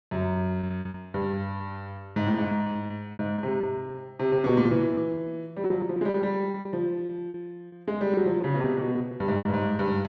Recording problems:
packet loss; 14% of the sound replaced, filled with repeated pitch periods

